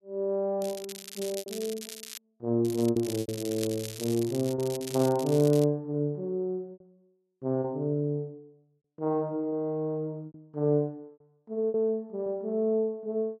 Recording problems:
lost packets; 5% of the sound replaced, filled with repeated pitch periods
crackle; from 0.5 to 2 s and from 2.5 to 5.5 s; loose cable, SNR 12 dB

